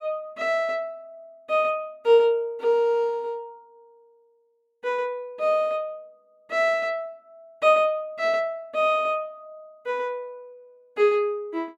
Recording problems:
none

